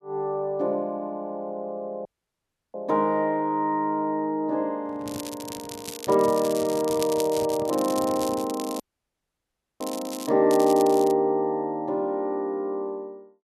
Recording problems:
audio cutting out; at 2 s for 0.5 s and at 9 s for 1 s
microphone handling noise; from 5 to 8.5 s; peak -11 dB vs average level
crackling; from 5 to 10 s and at 10 s; loose cable, SNR 13 dB

